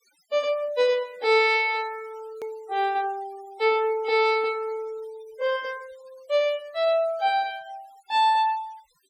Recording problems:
noise reduction artefacts; signal-to-artefact ratio 25 dB
click at an edit; at 2.5 s

